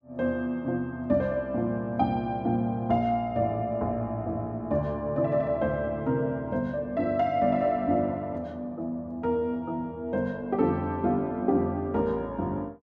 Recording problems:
none

